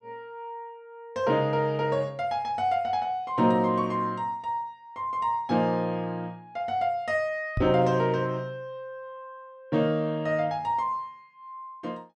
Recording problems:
microphone thump; at 7.5 s; peak +1 dB vs average level

